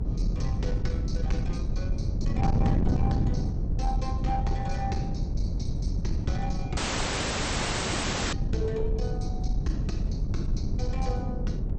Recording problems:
lossy codec; MP2, log-spectral distance 3 dB, nothing above 8.2 kHz
distortion; soft clipping, signal-to-distortion ratio 12 dB
low-frequency rumble; below 46 Hz, strongest tone 40 Hz, SNR 0 dB
wind on the microphone; below 180 Hz, SNR -5 dB
audio cutting out; at 7 s for 1.5 s

